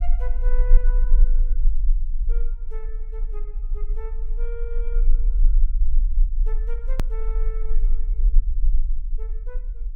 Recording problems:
rumble; below 34 Hz, strongest tone 24 Hz, SNR -17 dB
click at an edit; at 7 s

